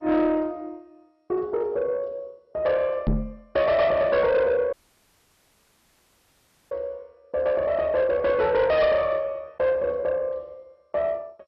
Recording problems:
codec artefacts; MP2, log-spectral distance 2 dB, nothing above 5.3 kHz
distorted audio; soft clipping, signal-to-distortion ratio 10 dB
microphone bump; at 3 s; peak +3 dB vs average level
audio cutting out; at 4.5 s for 2 s

